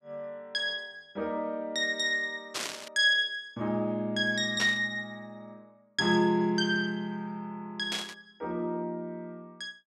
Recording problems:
burst of static; at 2.5 s, at 4.5 s and at 8 s; peak +1 dB vs average level

